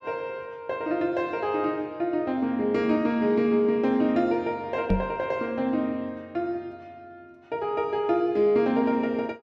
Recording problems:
microphone bump; at 5 s; peak +5 dB vs average level

